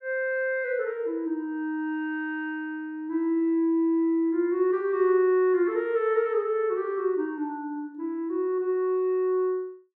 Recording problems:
none

